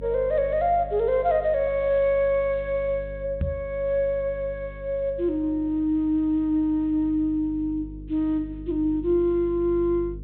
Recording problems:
treble missing; nothing above 4 kHz
electrical hum; 50 Hz, harmonics up to 450 Hz, SNR 16 dB
microphone thump; at 3.5 s; peak +2 dB vs average level

